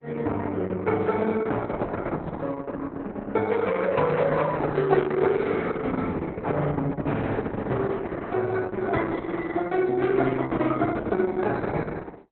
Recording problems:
codec artefacts; Opus, log-spectral distance 4 dB, nothing above 4 kHz

